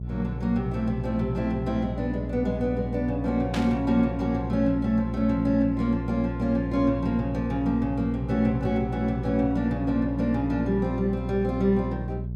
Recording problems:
mains hum; 60 Hz, harmonics up to 420 Hz, SNR 7 dB
static burst; at 3.5 s; peak -4 dB vs average level

